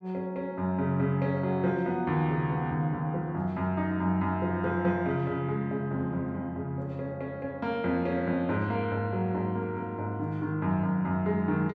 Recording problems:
none

